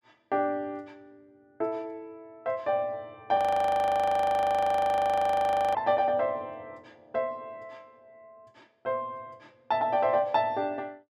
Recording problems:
frozen audio; at 3.5 s for 2.5 s

